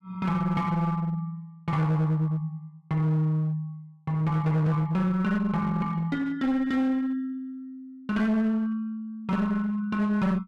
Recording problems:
distorted audio; hard clipping, uneven, signal-to-distortion ratio 10 dB

